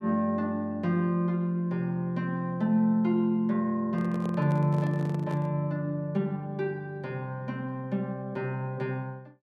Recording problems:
handling noise; from 4 to 5.5 s; peak -7 dB vs average level

